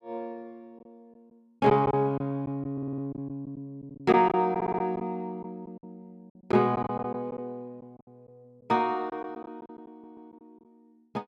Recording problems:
lost packets; 8% of the sound replaced, filled with silence
audio stuttering; at 2.5 s, at 4.5 s and at 10 s

